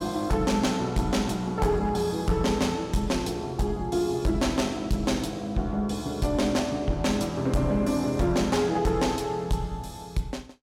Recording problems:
distorted audio; hard clipping, signal-to-distortion ratio 12 dB

